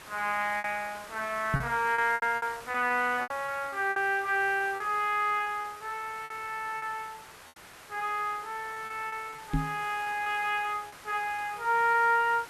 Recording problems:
background hiss; SNR 17 dB
lost packets; 9% of the sound replaced, filled with repeated pitch periods
microphone thump; at 1.5 s and at 9.5 s; peak +4 dB vs average level

